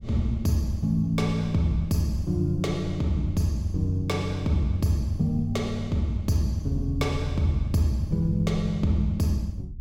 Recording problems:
low-frequency rumble; below 86 Hz, SNR 15 dB

